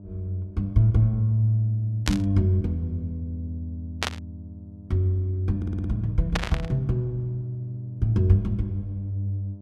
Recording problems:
electrical hum; 50 Hz, harmonics up to 700 Hz, SNR 19 dB
burst of static; at 2 s, at 4 s and at 6.5 s; peak +4 dB vs average level
audio stuttering; at 5.5 s

